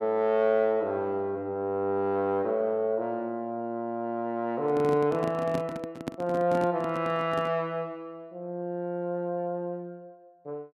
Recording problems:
handling noise; from 4.5 to 7.5 s; peak 0 dB vs average level

